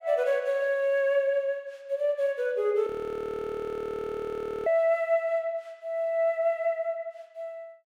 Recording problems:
frozen audio; at 3 s for 2 s

